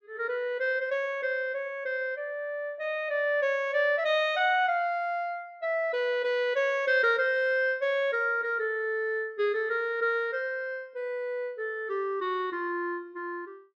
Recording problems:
none

